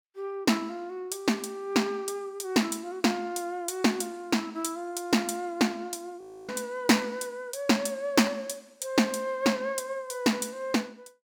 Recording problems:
audio freezing; at 6 s

